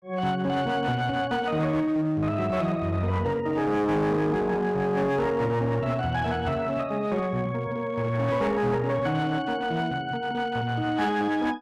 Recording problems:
distortion; hard clipping, uneven, signal-to-distortion ratio 10 dB

